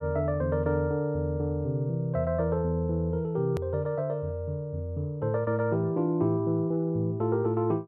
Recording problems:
click at an edit; at 3.5 s

